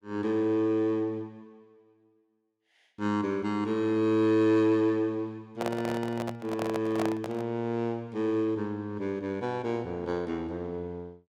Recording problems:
handling noise; from 5.5 to 7.5 s; peak 0 dB vs average level

